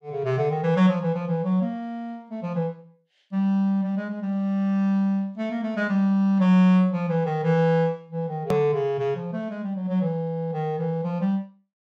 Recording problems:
hard cut with a click; at 8.5 s

